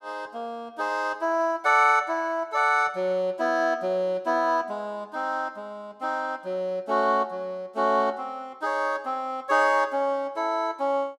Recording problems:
none

